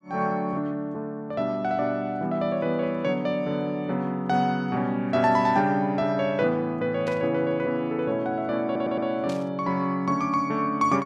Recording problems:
burst of static; at 7 s and at 9.5 s; peak -11 dB vs average level
audio stuttering; at 8.5 s

